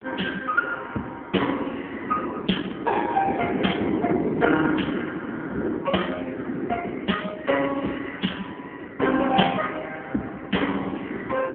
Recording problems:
phone line; 150 Hz to 3.3 kHz, AMR-NB
wind noise; below 420 Hz, SNR 4 dB

